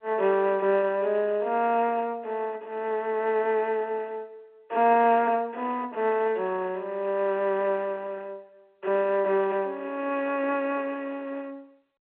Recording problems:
telephone audio; 320 Hz to 3.3 kHz, G.711

